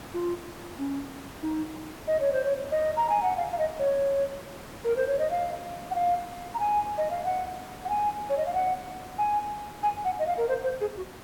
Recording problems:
background hiss; slope -5 dB per octave, SNR 15 dB

